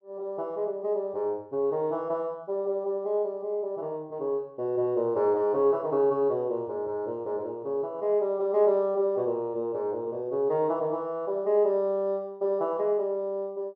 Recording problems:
none

